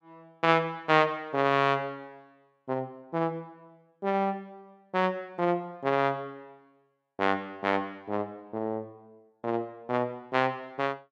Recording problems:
none

